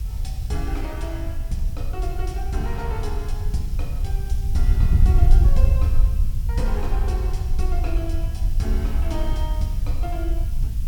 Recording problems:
background hiss; slope +1 dB per octave, SNR 15 dB
wind noise; below 68 Hz, SNR -8 dB

